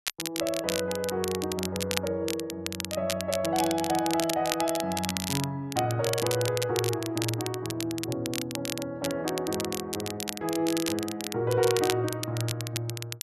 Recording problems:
crackle; vinyl, SNR 5 dB

